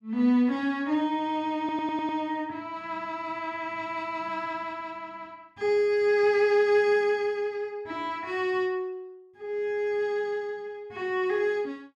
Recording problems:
stutter; at 1.5 s

